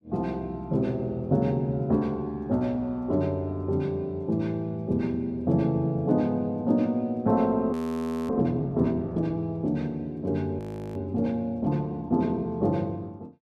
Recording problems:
audio freezing; at 7.5 s for 0.5 s and at 11 s

